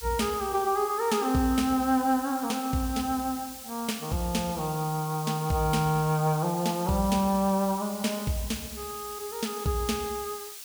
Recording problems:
hiss; slope +4 dB per octave, SNR 12 dB

